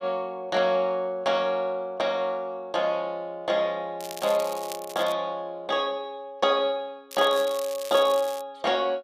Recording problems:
crackling; from 4 to 5 s and from 7 to 8.5 s; loose cable, SNR 14 dB

